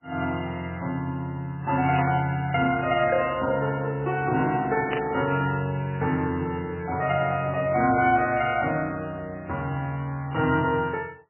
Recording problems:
lossy codec; MP3, log-spectral distance 3 dB, nothing above 2.8 kHz
static burst; at 2 s and at 5 s; peak -1 dB vs average level

